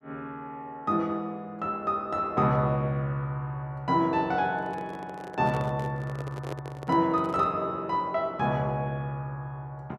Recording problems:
microphone handling noise; from 4.5 to 7.5 s; peak -4 dB vs average level

